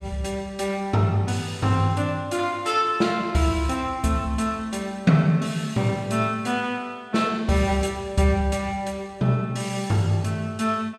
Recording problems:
none

